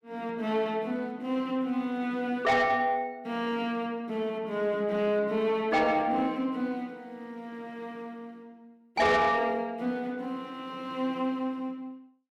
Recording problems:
distortion; soft clipping, signal-to-distortion ratio 11 dB

